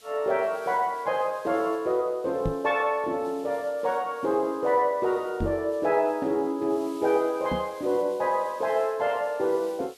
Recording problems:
background hiss; SNR 26 dB
microphone thump; at 2.5 s, at 5.5 s and at 7.5 s; peak +1 dB vs average level

